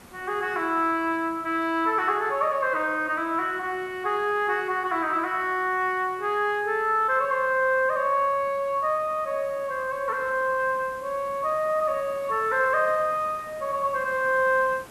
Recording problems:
background hiss; SNR 24 dB

